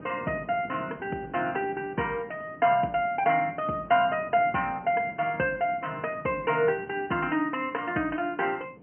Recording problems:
phone line; 150 Hz to 3.1 kHz, G.711
wind on the microphone; below 400 Hz, SNR 19 dB

